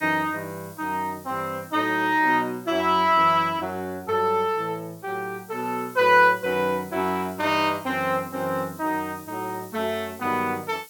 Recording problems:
background hiss; SNR 22 dB

